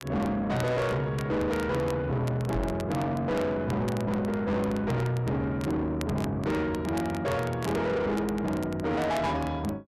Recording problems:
distorted audio; soft clipping, signal-to-distortion ratio 8 dB
crackling; vinyl, SNR 18 dB
microphone bump; at 2.5 s; peak +2 dB vs average level

